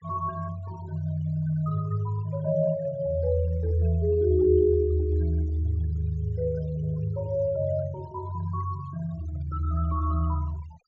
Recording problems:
treble cut off; nothing above 8 kHz
denoising artefacts; signal-to-artefact ratio 24 dB

